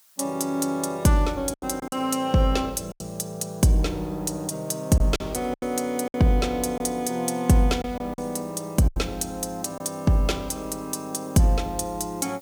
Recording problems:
hiss; SNR 27 dB
lost packets; 5% of the sound replaced, filled with silence

